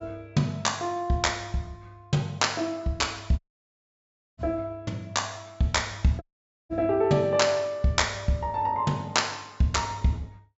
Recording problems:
treble cut off; nothing above 8 kHz
dropout; at 3.5 s for 1 s and at 6 s

